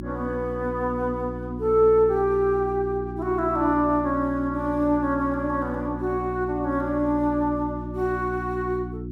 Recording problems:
electrical hum; 60 Hz, harmonics up to 360 Hz, SNR 9 dB

